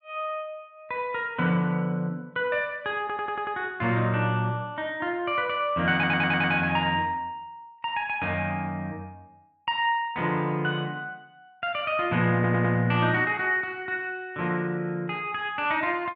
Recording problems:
stutter; at 3 s, at 6 s and at 12 s

